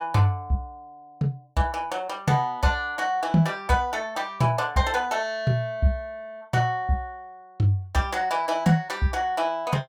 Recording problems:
none

